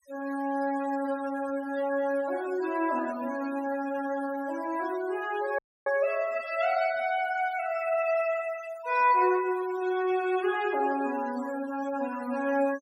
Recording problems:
noise reduction artefacts; signal-to-artefact ratio 17 dB
audio cutting out; at 5.5 s

